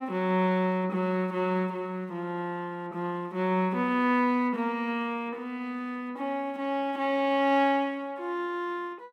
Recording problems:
none

